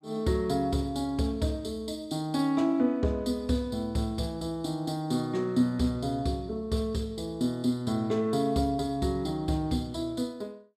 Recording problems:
none

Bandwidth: 14.5 kHz